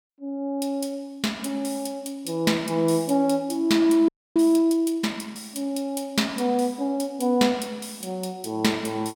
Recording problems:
frozen audio; at 4 s

